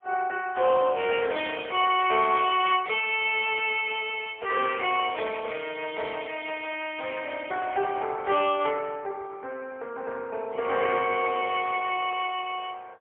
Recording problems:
phone line; 320 Hz to 3.3 kHz, AMR-NB, then MP3

